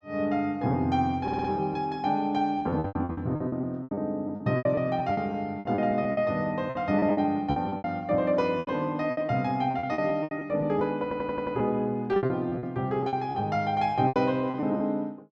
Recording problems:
lost packets; 14% of the sound replaced, filled with repeated pitch periods
stutter; at 1 s and at 11 s

